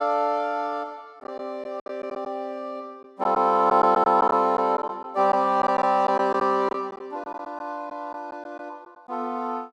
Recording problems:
lost packets; 6% of the sound replaced, filled with silence

